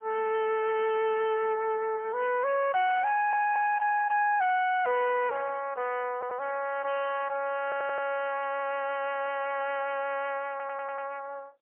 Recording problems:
phone line; 340 Hz to 3.3 kHz, AMR-NB, then MP3
distorted audio; hard clipping, uneven, signal-to-distortion ratio 10 dB
stutter; 4 times, first at 3 s

